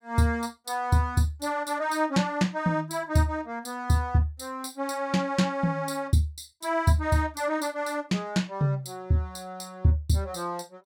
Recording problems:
none

